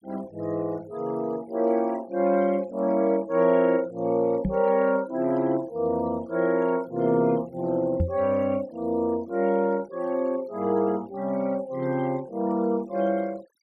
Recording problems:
noise reduction artefacts; signal-to-artefact ratio 26 dB
knock on the microphone; at 4.5 s and at 8 s; peak +4 dB vs average level

